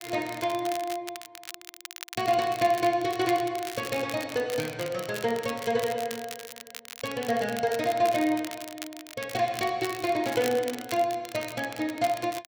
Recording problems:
crackling; vinyl, SNR 12 dB

